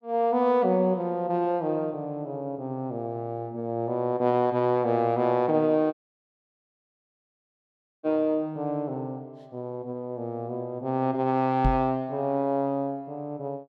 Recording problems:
dropout; at 6 s for 2 s
microphone bump; at 12 s; peak +4 dB vs average level

